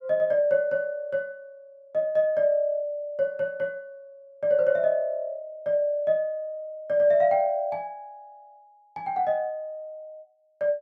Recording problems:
none

